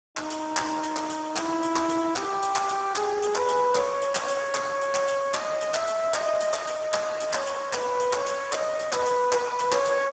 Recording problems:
codec artefacts; Speex, log-spectral distance 6 dB, nothing above 7.8 kHz

